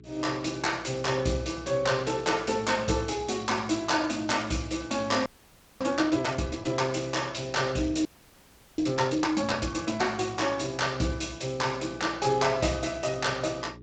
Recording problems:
lossy codec; Speex, log-spectral distance 6 dB, nothing above 7.6 kHz
hum; 60 Hz, harmonics up to 420 Hz, SNR 21 dB
audio freezing; at 5.5 s for 0.5 s and at 8 s for 0.5 s

